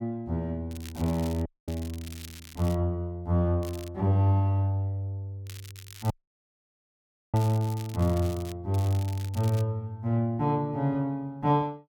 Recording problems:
crackle; 4 times, first at 0.5 s; loose cable, SNR 18 dB
audio cutting out; at 1.5 s and at 6 s for 1 s

